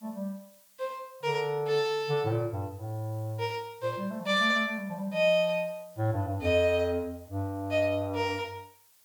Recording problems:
hiss; slope +1 dB per octave, SNR 28 dB

